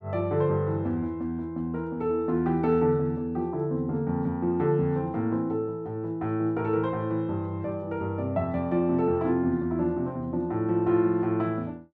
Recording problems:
none

